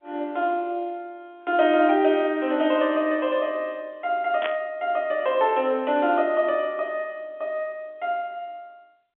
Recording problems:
phone line; 220 Hz to 3.5 kHz, G.711
static burst; at 4.5 s; peak -1 dB vs average level

